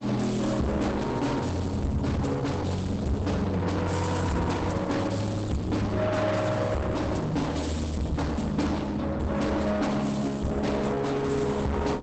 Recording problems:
codec artefacts; Opus, log-spectral distance 4 dB, nothing above 8 kHz
distortion; soft clipping, signal-to-distortion ratio 6 dB

